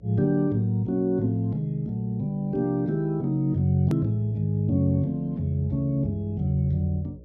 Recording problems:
low-pass filter; nothing above 7.2 kHz
hum; 60 Hz, harmonics up to 600 Hz, SNR 26 dB
click at an edit; at 4 s

